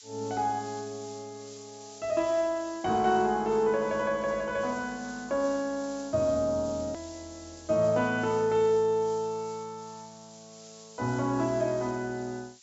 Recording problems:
low-pass filter; nothing above 8 kHz
hiss; SNR 20 dB
hard cut with a click; at 7 s

